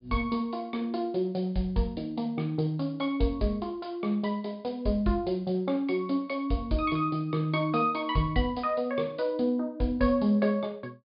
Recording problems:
treble missing; nothing above 4.9 kHz

